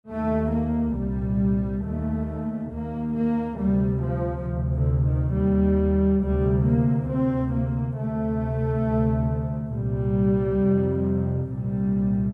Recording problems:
none

